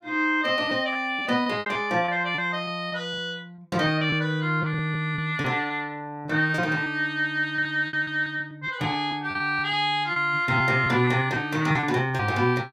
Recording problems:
lost packets; 10% of the sound replaced, filled with repeated pitch periods

